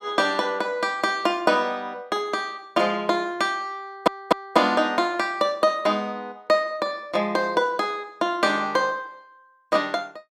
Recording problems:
audio stuttering; at 4 s

